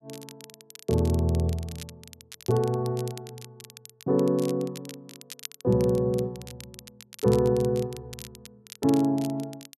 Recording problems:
crackle; vinyl, SNR 19 dB

